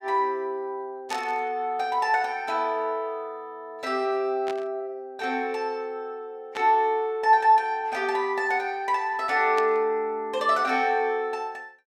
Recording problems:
static burst; 4 times, first at 1 s; peak -7 dB vs average level

